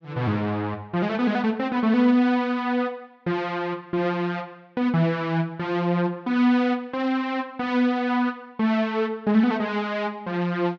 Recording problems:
none

